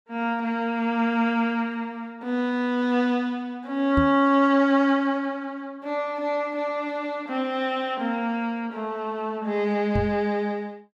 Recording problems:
microphone thump; at 4 s and at 10 s; peak +2 dB vs average level

